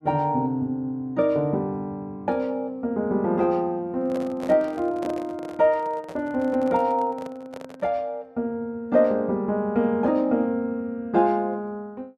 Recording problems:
microphone handling noise; from 4 to 8 s; peak -7 dB vs average level

